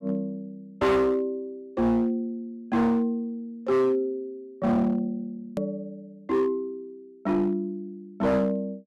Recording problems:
distortion; hard clipping, signal-to-distortion ratio 8 dB
edit click; at 5.5 s

